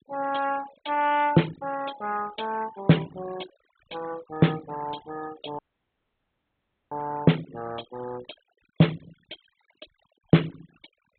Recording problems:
treble cut off; nothing above 4 kHz
denoising artefacts; signal-to-artefact ratio 19 dB
audio cutting out; at 5.5 s for 1.5 s

